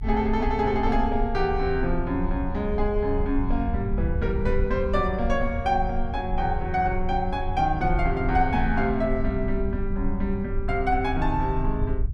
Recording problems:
rumble; below 70 Hz, strongest tone 22 Hz, SNR 5 dB

